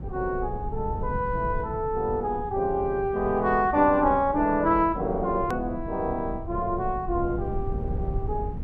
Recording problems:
low-frequency rumble; below 120 Hz, SNR 10 dB
edit click; at 5.5 s

